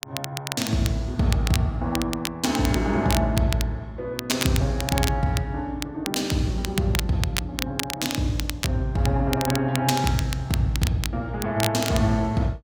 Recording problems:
crackle; vinyl, SNR 7 dB

